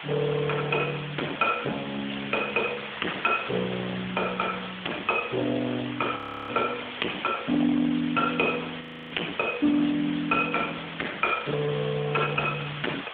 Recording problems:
phone line; 260 Hz to 3.6 kHz, AMR-NB
distortion; hard clipping, signal-to-distortion ratio 12 dB
hiss; SNR 9 dB
frozen audio; at 6 s and at 9 s

